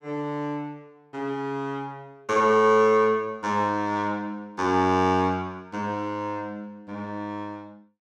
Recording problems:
none

